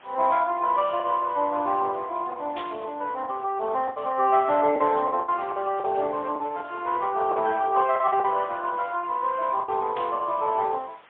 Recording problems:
phone line; 260 Hz to 3.5 kHz, AMR-NB, then MP3
hiss; SNR 27 dB
lost packets; 7% of the sound replaced, filled with the last packet
static burst; at 2.5 s and at 10 s; peak -10 dB vs average level

